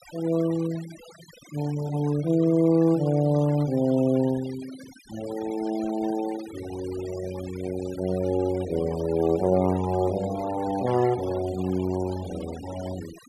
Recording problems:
noise reduction artefacts; signal-to-artefact ratio 18 dB

